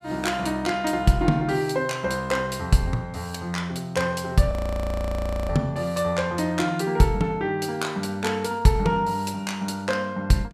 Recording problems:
frozen audio; at 4.5 s for 1 s

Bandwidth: 15 kHz